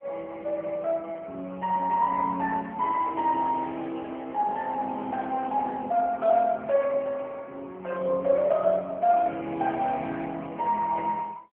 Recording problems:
phone line; 240 Hz to 3.3 kHz, AMR-NB

